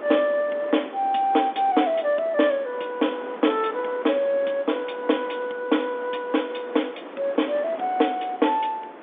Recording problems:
telephone audio; 240 Hz to 3.6 kHz, G.711
wind on the microphone; below 1.2 kHz, SNR 15 dB

